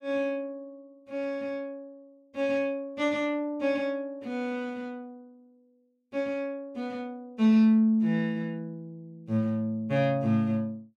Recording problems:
none

